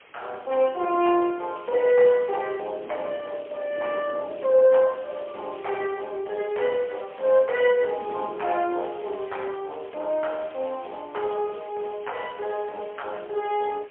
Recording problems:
phone line; 300 Hz to 3.3 kHz, AMR-NB, then MP3
background hiss; SNR 24 dB
wind noise; below 590 Hz, SNR 20 dB

